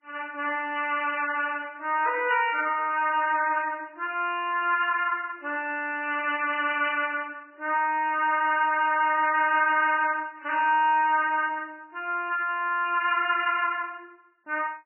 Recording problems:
codec artefacts; MP3, log-spectral distance 3 dB, nothing above 2.4 kHz

